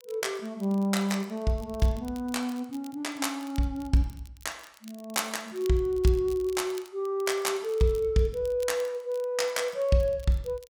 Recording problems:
crackling; vinyl, SNR 24 dB

